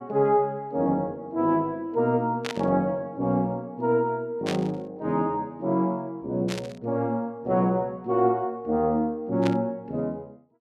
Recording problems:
static burst; 4 times, first at 2.5 s; peak -2 dB vs average level

